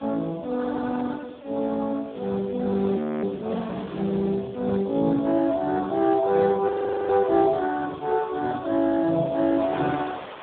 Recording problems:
telephone audio; 190 Hz to 2 kHz, Speex
background hiss; SNR 27 dB
wind on the microphone; below 1.6 kHz, SNR 21 dB
frozen audio; at 3 s and at 6.5 s

